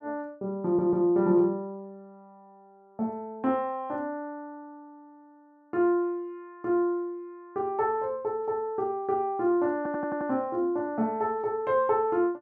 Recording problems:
audio stuttering; at 0.5 s and at 10 s

